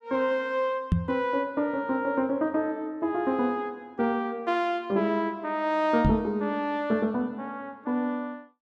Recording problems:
microphone thump; at 1 s and at 6 s; peak +7 dB vs average level

